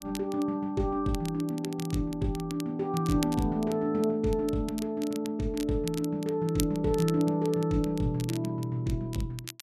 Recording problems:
crackle; vinyl, SNR 15 dB

